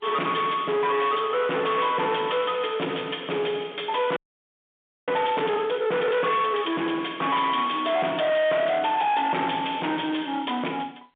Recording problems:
telephone audio; 280 Hz to 3.6 kHz, G.711
distorted audio; hard clipping, uneven, signal-to-distortion ratio 6 dB
audio freezing; at 4 s for 1 s

